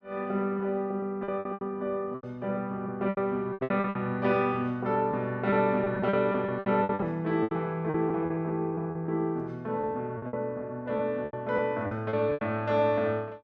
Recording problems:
packet loss; 13% of the sound replaced, filled with repeated pitch periods

